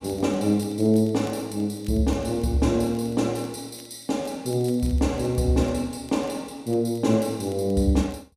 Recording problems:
crackle; vinyl, SNR 29 dB

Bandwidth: 14.5 kHz